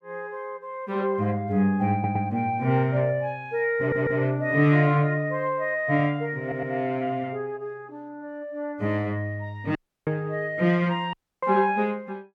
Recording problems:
audio stuttering; at 2 s, at 4 s and at 6.5 s
audio cutting out; at 10 s and at 11 s

